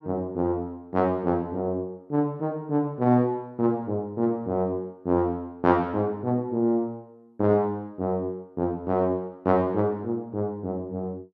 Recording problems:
none

